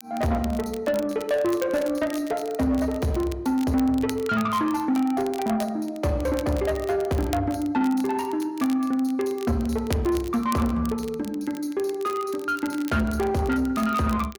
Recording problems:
distortion; soft clipping, signal-to-distortion ratio 12 dB
crackle; vinyl, SNR 18 dB

